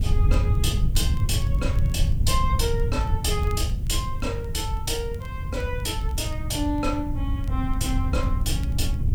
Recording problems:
background hiss; SNR 27 dB
wind on the microphone; below 100 Hz, SNR -3 dB
crackle; vinyl, SNR 26 dB

